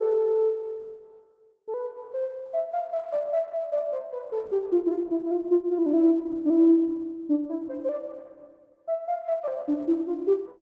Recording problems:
codec artefacts; Opus, log-spectral distance 2 dB

